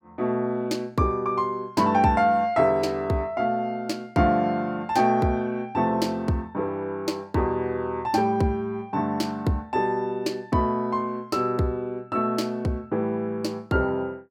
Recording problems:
none

